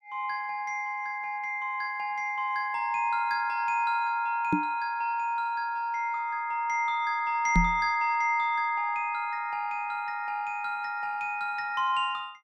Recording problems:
microphone bump; at 4.5 s and at 7.5 s; peak +7 dB vs average level

